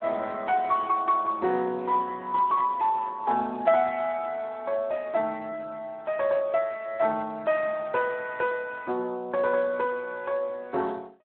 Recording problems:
phone line; 220 Hz to 3.4 kHz, Speex

